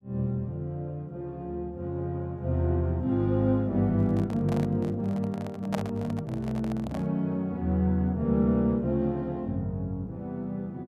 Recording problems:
handling noise; from 4 to 7 s; peak +1 dB vs average level

